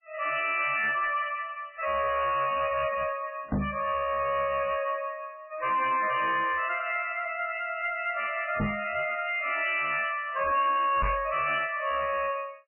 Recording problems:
lossy codec; MP3, log-spectral distance 7 dB, nothing above 2.4 kHz
distortion; hard clipping, signal-to-distortion ratio 6 dB
microphone thump; at 3.5 s, at 8.5 s and at 11 s; peak +4 dB vs average level

